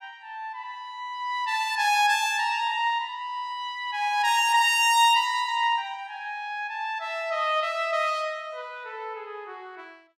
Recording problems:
none

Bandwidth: 15.5 kHz